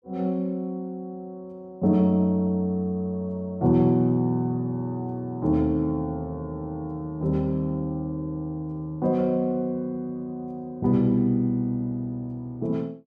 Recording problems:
none

